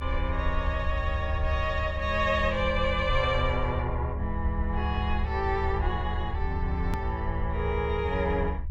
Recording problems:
low-frequency rumble; below 72 Hz, SNR 3 dB
edit click; at 7 s

